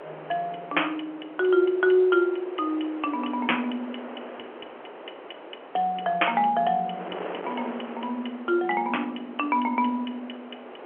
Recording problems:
phone line; 320 Hz to 3.2 kHz, G.711
wind on the microphone; below 1.1 kHz, SNR 15 dB

